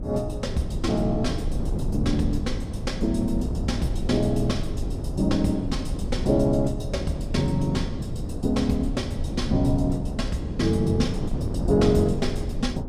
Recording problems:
wind noise; below 180 Hz, SNR 4 dB

